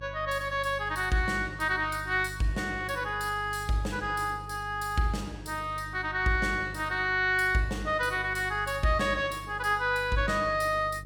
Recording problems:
hum; 50 Hz, harmonics up to 450 Hz, SNR 15 dB

